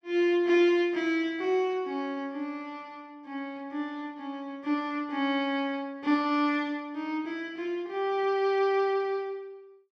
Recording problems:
none

